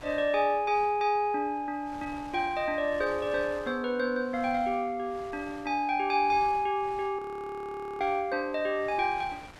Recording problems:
wind noise; below 2 kHz, SNR 21 dB
frozen audio; at 7 s for 1 s

